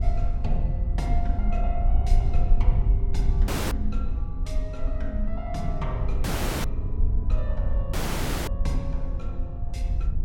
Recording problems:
rumble; below 42 Hz, strongest tone 20 Hz, SNR 2 dB
wind noise; below 62 Hz, SNR -7 dB
dropout; at 3.5 s, at 6 s and at 8 s for 0.5 s

